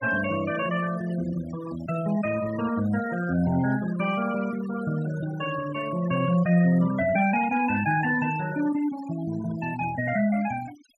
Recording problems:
denoising artefacts; signal-to-artefact ratio 13 dB

